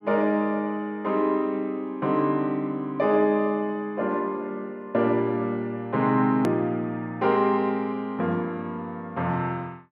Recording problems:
click at an edit; at 6.5 s

